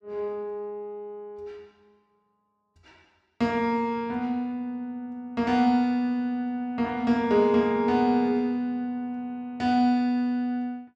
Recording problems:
none

